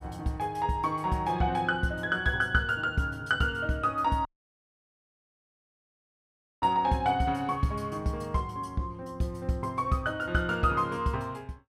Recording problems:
dropout; at 4.5 s for 2.5 s

